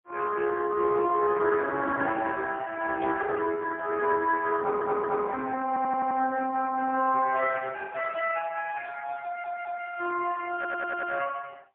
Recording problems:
telephone audio; 280 Hz to 2.7 kHz, AMR-NB, then MP3
static burst; at 3 s; peak -15 dB vs average level
stutter; 4 times, first at 4.5 s

